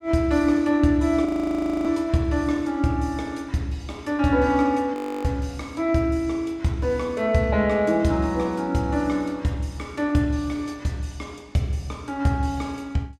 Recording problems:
frozen audio; at 1.5 s for 0.5 s and at 5 s

